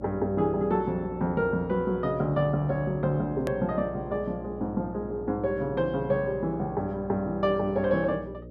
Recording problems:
hum; 60 Hz, harmonics up to 600 Hz, SNR 14 dB
edit click; at 3.5 s

